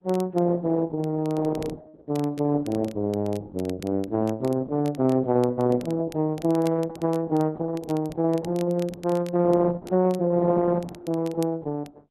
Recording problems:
lossy compression; Opus, log-spectral distance 2 dB
crackle; vinyl, SNR 24 dB

